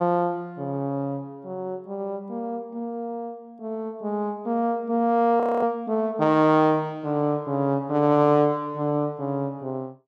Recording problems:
frozen audio; at 5.5 s

